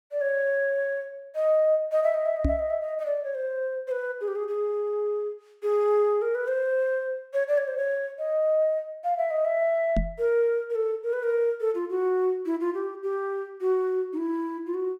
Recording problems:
knock on the microphone; at 2.5 s and at 10 s; peak +5 dB vs average level

